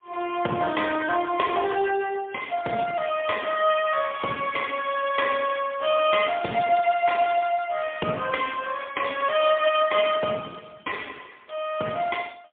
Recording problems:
telephone audio; 300 Hz to 3.5 kHz, AMR-NB, then MP3

